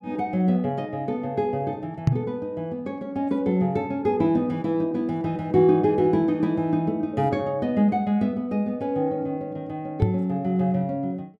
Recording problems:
microphone bump; at 2 s and at 10 s; peak +8 dB vs average level

